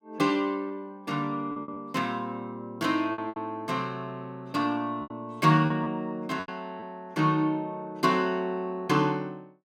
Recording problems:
packet loss; 6% of the sound replaced, filled with repeated pitch periods

